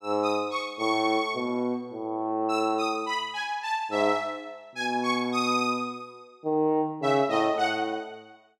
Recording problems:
none

